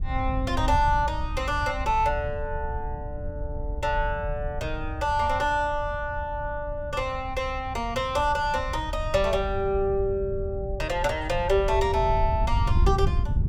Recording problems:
wind on the microphone; below 88 Hz, SNR 6 dB

